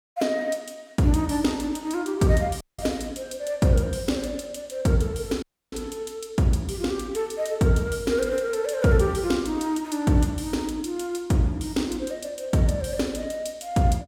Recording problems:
dropout; at 2.5 s and at 5.5 s

